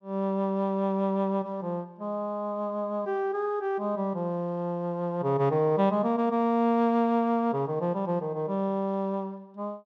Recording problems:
none

